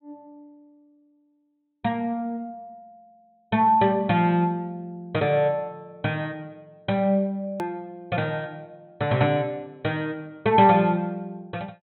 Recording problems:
treble cut off; nothing above 4 kHz
click at an edit; at 7.5 s

